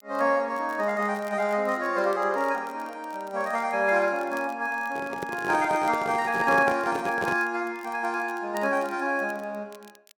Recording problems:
crackle; vinyl, SNR 27 dB
microphone handling noise; from 5 to 7.5 s; peak -1 dB vs average level

